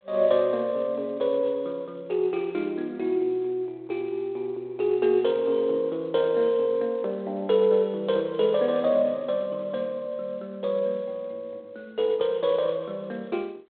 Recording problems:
phone line; 280 Hz to 3.8 kHz, G.726

